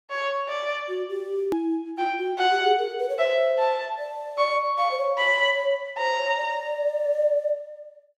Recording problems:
edit click; at 1.5 s

